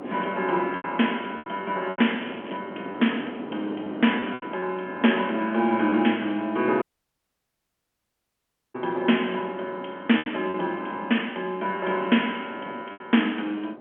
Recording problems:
telephone audio; 190 Hz to 3.3 kHz, G.711
wind on the microphone; below 590 Hz, SNR 14 dB
lost packets; 7% of the sound replaced, filled with repeated pitch periods
crackle; at 2 s; loose cable, SNR 20 dB
audio cutting out; at 7 s for 2 s

